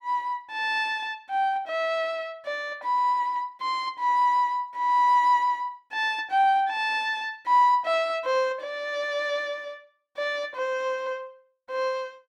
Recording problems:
none

